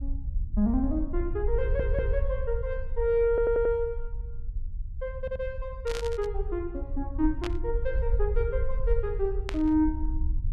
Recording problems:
low-frequency rumble; below 60 Hz, SNR 4 dB
audio stuttering; at 1.5 s, at 3.5 s and at 5 s
static burst; at 6 s, at 7.5 s and at 9.5 s; peak -2 dB vs average level

